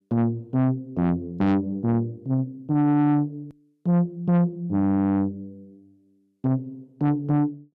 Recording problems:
distortion; soft clipping, signal-to-distortion ratio 7 dB
click at an edit; at 3.5 s

